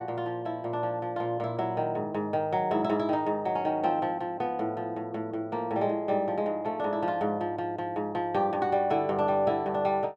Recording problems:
none

